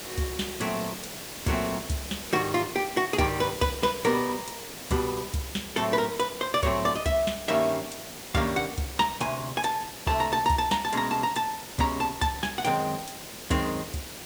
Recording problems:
hiss; SNR 10 dB

